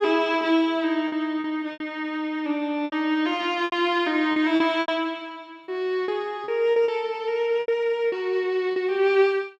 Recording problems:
packet loss; 9% of the sound replaced, filled with repeated pitch periods

